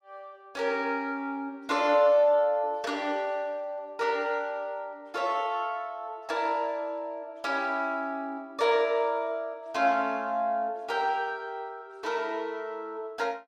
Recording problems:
none

